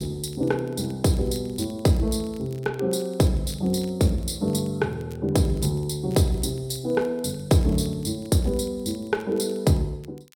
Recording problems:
crackle; vinyl, SNR 28 dB

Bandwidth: 16.5 kHz